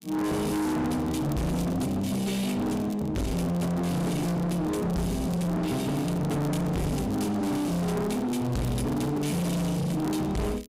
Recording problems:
distorted audio; hard clipping, signal-to-distortion ratio 6 dB
crackling; vinyl, SNR 21 dB

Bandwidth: 15.5 kHz